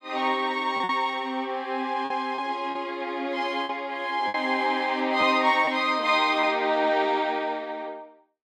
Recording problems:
lost packets; 4% of the sound replaced, filled with repeated pitch periods

